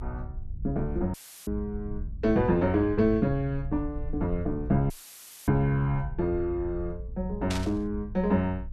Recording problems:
rumble; below 74 Hz, SNR 10 dB
dropout; at 1 s and at 5 s for 0.5 s; filled with static
static burst; at 7.5 s; peak -2 dB vs average level

